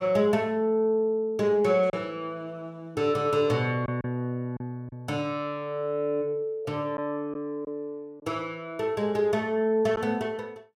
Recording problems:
packet loss; 2% of the sound replaced, filled with silence

